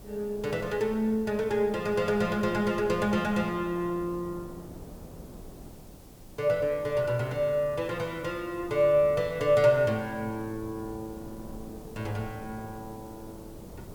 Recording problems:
background hiss; slope +1 dB per octave, SNR 27 dB
wind noise; below 410 Hz, SNR 19 dB

